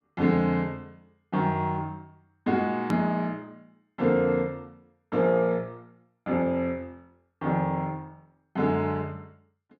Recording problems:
hard cut with a click; at 3 s

